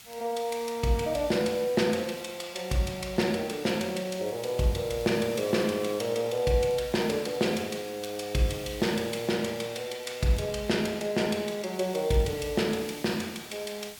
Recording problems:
hiss; slope +2 dB per octave, SNR 17 dB
crackling; vinyl, SNR 30 dB

